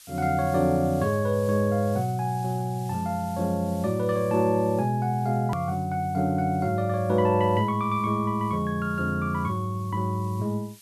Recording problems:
background hiss; slope +5 dB per octave, SNR 24 dB
hard cut with a click; at 5.5 s

